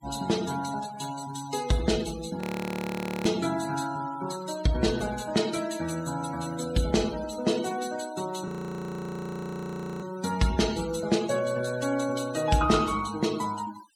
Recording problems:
denoising artefacts; signal-to-artefact ratio 14 dB
audio freezing; at 2.5 s for 1 s and at 8.5 s for 1.5 s

